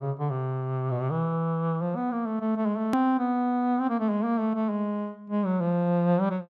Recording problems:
hard cut with a click; at 3 s

